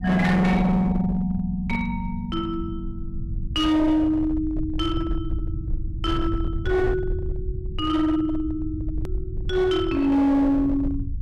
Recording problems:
distortion; hard clipping, uneven, signal-to-distortion ratio 10 dB
low-frequency rumble; below 98 Hz, SNR 8 dB
edit click; at 9 s

